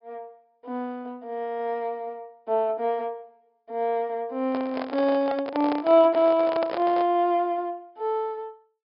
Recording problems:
low-pass filter; nothing above 5.5 kHz
microphone handling noise; from 4.5 to 7 s; peak -2 dB vs average level

